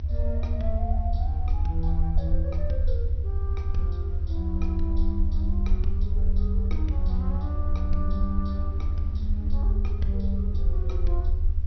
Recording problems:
treble cut off; nothing above 6 kHz
mains hum; 60 Hz, harmonics up to 960 Hz, SNR 19 dB
hiss; slope -5 dB per octave, SNR 27 dB
rumble; below 78 Hz, SNR -8 dB
wind on the microphone; below 250 Hz, SNR 17 dB

